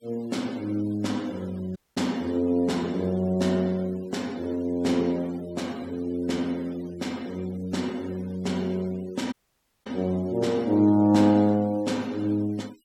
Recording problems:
noise reduction artefacts; signal-to-artefact ratio 24 dB
audio cutting out; at 2 s and at 9.5 s for 0.5 s

